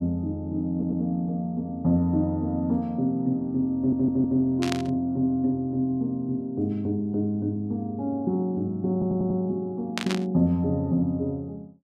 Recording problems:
audio stuttering; at 0.5 s, at 4 s and at 9 s
static burst; at 4.5 s and at 10 s; peak +1 dB vs average level

